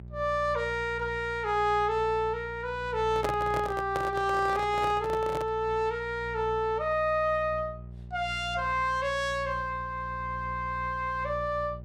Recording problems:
electrical hum; 60 Hz, harmonics up to 420 Hz, SNR 14 dB
handling noise; from 3 to 5.5 s; peak +1 dB vs average level

